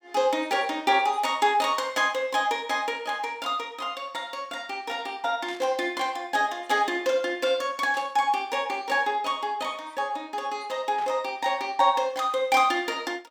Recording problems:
burst of static; at 5.5 s, at 8 s and at 11 s; peak -13 dB vs average level

